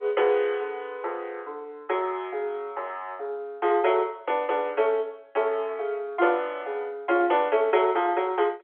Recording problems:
phone line; 300 Hz to 3.5 kHz, G.711

